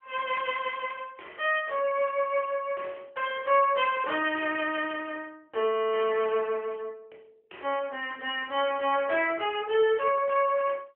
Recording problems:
phone line; 320 Hz to 3.2 kHz, AMR-NB

